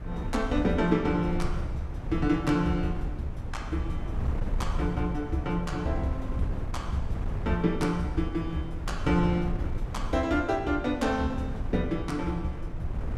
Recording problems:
wind noise; below 110 Hz, SNR 6 dB

